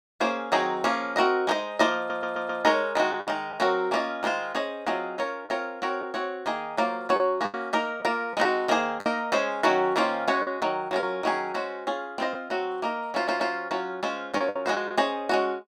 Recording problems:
lost packets; 4% of the sound replaced, filled with the last packet
audio stuttering; at 2 s and at 13 s

